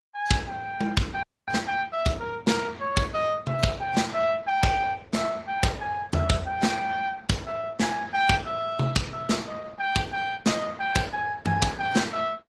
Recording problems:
lossy compression; AAC, then Opus, log-spectral distance 4 dB, nothing above 15.5 kHz
audio freezing; at 1 s

